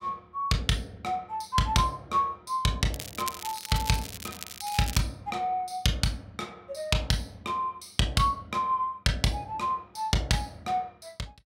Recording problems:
crackling; from 3 to 5 s; loose cable, SNR 9 dB

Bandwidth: 16 kHz